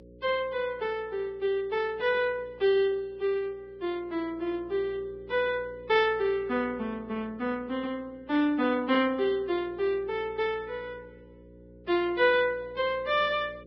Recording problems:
codec artefacts; Vorbis, log-spectral distance 2 dB, nothing above 5.3 kHz
hum; 60 Hz, harmonics up to 540 Hz, SNR 23 dB

